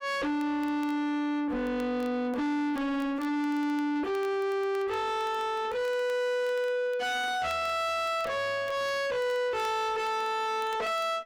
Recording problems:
distortion; soft clipping, signal-to-distortion ratio 6 dB
crackling; vinyl, SNR 27 dB

